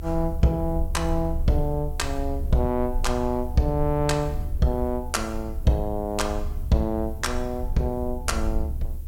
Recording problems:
background hiss; slope 0 dB per octave, SNR 28 dB
rumble; below 70 Hz, strongest tone 24 Hz, SNR 6 dB

